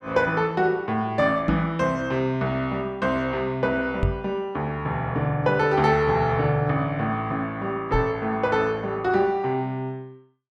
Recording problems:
microphone bump; at 1.5 s, at 4 s and at 8 s; peak +4 dB vs average level

